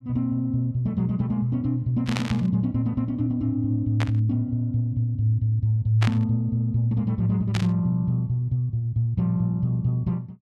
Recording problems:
burst of static; 4 times, first at 2 s; peak -1 dB vs average level

